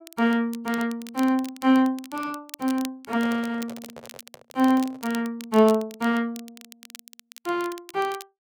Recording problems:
crackle; vinyl, SNR 19 dB
microphone handling noise; from 3 to 5 s; peak -12 dB vs average level

